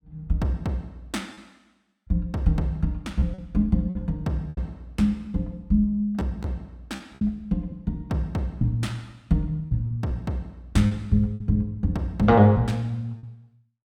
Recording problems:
packet loss; 5% of the sound replaced, filled with repeated pitch periods

